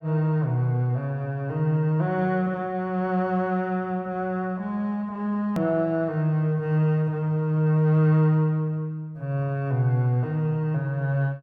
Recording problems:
edit click; at 5.5 s

